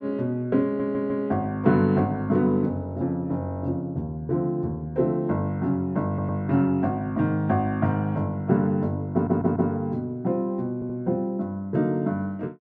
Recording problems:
audio stuttering; 4 times, first at 0.5 s

